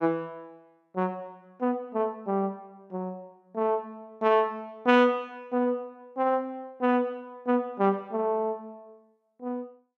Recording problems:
none

